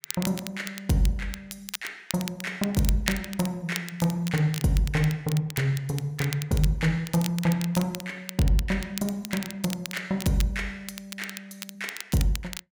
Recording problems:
crackle; vinyl, SNR 10 dB

